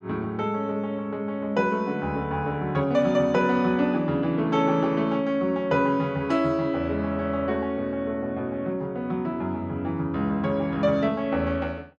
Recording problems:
none

